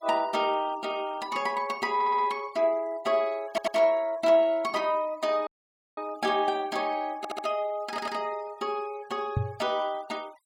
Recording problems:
noise reduction artefacts; signal-to-artefact ratio 24 dB
audio stuttering; 4 times, first at 2 s
audio cutting out; at 5.5 s for 0.5 s
knock on the microphone; at 9.5 s; peak +4 dB vs average level

